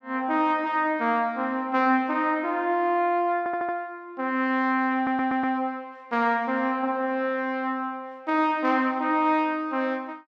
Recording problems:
stutter; at 3.5 s and at 5 s

